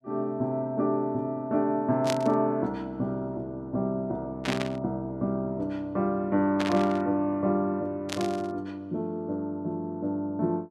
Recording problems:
static burst; 4 times, first at 2 s; peak +1 dB vs average level

